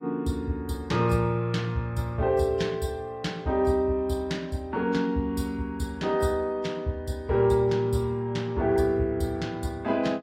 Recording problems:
codec artefacts; AAC, log-spectral distance 2 dB, nothing above 14.7 kHz

